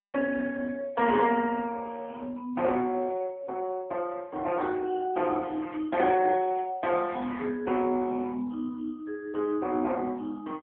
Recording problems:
telephone audio; 220 Hz to 3.5 kHz, AMR-NB

